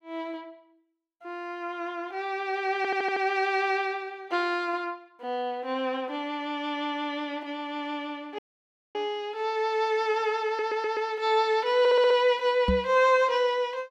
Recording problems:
stutter; at 3 s, at 10 s and at 12 s
audio cutting out; at 8.5 s for 0.5 s
knock on the microphone; at 13 s; peak +4 dB vs average level

